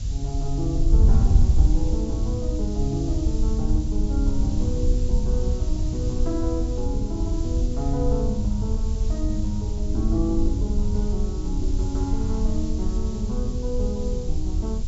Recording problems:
treble missing; nothing above 8 kHz
background hiss; slope +6 dB per octave, SNR 16 dB
wind on the microphone; below 72 Hz, SNR -4 dB

